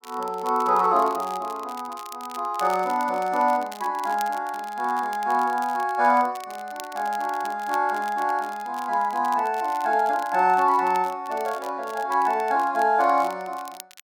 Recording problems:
crackle; vinyl, SNR 21 dB

